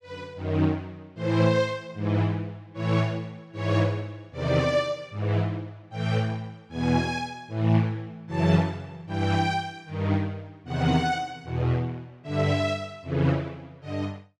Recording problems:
none

